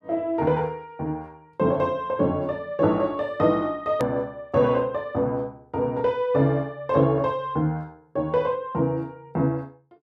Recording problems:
hard cut with a click; at 4 s

